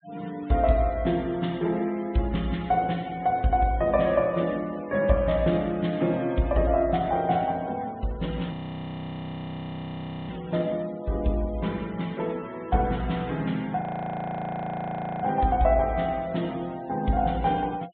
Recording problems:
treble missing; nothing above 4 kHz
denoising artefacts; signal-to-artefact ratio 23 dB
frozen audio; at 8.5 s for 2 s and at 14 s for 1.5 s

